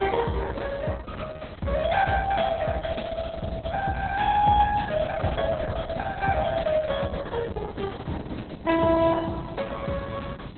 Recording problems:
codec artefacts; Opus, log-spectral distance 6 dB, nothing above 3.6 kHz
hiss; SNR 27 dB
wind noise; below 220 Hz, SNR 14 dB

